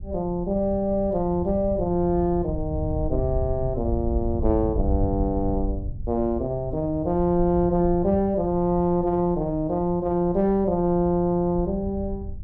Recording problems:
wind on the microphone; below 90 Hz, SNR 9 dB

